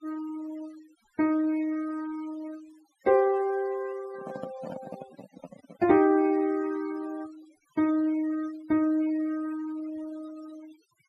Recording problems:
noise reduction artefacts; signal-to-artefact ratio 20 dB
microphone handling noise; from 4 to 6 s; peak -8 dB vs average level

